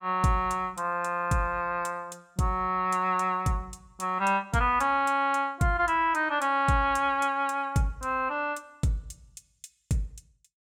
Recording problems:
none

